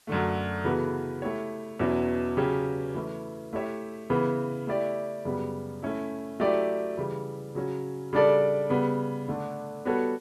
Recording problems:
background hiss; slope 0 dB per octave, SNR 30 dB

